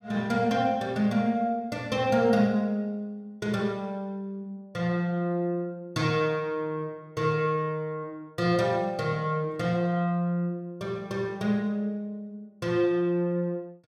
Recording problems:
none

